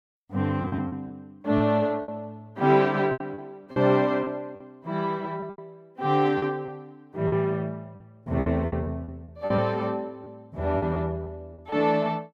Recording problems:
packet loss; 10% of the sound replaced, filled with repeated pitch periods

